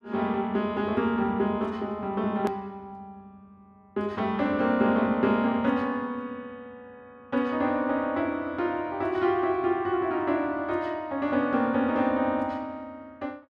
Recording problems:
hard cut with a click; at 2.5 s

